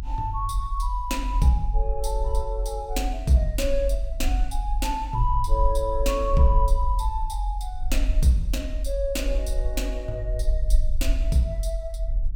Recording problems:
low-frequency rumble; below 46 Hz, SNR 1 dB

